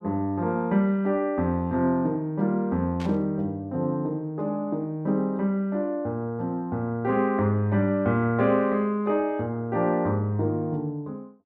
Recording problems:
static burst; at 3 s; peak -11 dB vs average level

